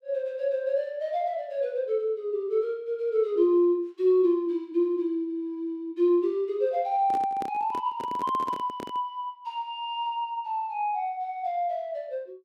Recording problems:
handling noise; from 7 to 9 s; peak -6 dB vs average level

